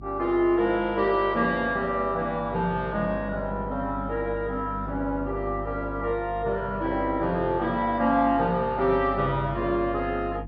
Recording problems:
treble cut off; nothing above 5.5 kHz
hum; 50 Hz, harmonics up to 350 Hz, SNR 13 dB

